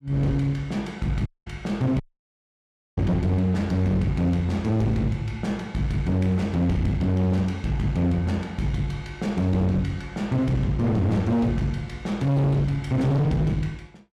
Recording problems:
distortion; hard clipping, uneven, signal-to-distortion ratio 7 dB
dropout; at 1.5 s and at 2 s for 1 s

